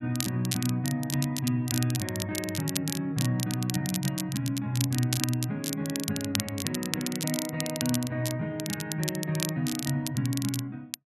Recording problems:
crackling; vinyl, SNR 4 dB

